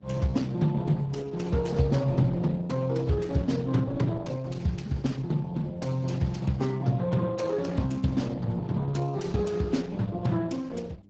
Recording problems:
codec artefacts; Speex, then Opus, log-spectral distance 3 dB, nothing above 7.3 kHz
mains hum; 50 Hz, harmonics up to 600 Hz, SNR 25 dB

